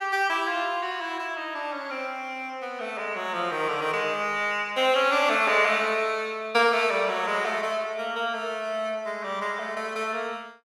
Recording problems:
none

